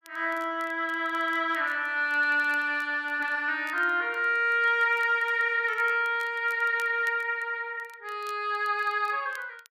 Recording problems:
crackle; vinyl, SNR 29 dB

